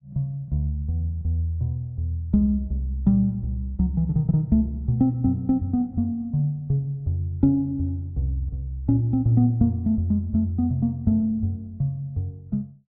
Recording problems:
none

